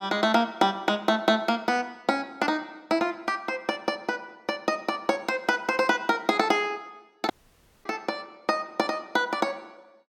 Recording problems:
audio cutting out; at 7.5 s for 0.5 s

